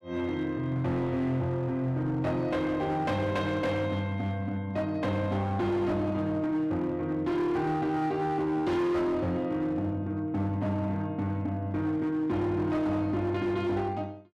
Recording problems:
distorted audio; hard clipping, signal-to-distortion ratio 11 dB

